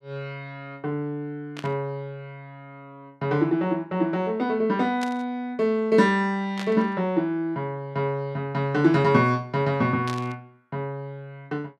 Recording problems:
static burst; 4 times, first at 1.5 s; peak -6 dB vs average level

